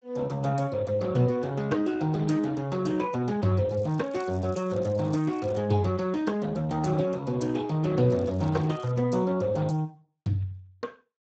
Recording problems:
lossy compression; Speex, log-spectral distance 3 dB, nothing above 7.3 kHz
crackle; from 3.5 to 5.5 s and at 8 s; loose cable, SNR 30 dB

